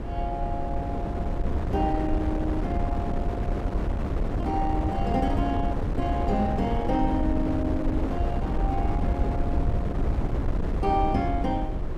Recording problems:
low-frequency rumble; below 86 Hz, SNR 7 dB
wind noise; below 270 Hz, SNR 0 dB

